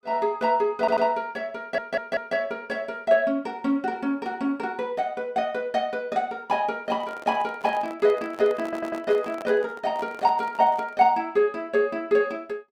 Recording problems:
stutter; at 1 s, at 1.5 s and at 8.5 s
handling noise; from 7 to 11 s; peak -10 dB vs average level

